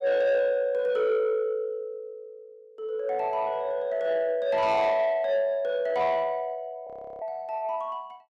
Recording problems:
distortion; soft clipping, signal-to-distortion ratio 11 dB
frozen audio; at 7 s

